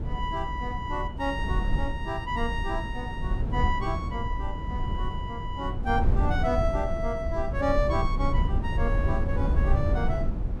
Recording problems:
wind noise; below 96 Hz, SNR -1 dB

